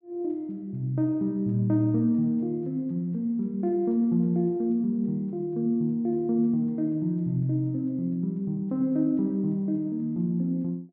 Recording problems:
none

